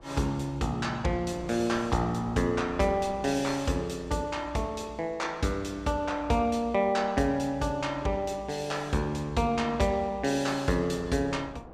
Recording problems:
wind on the microphone; below 680 Hz, SNR 21 dB

